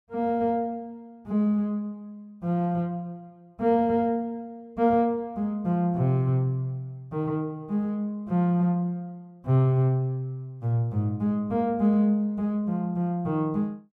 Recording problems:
none

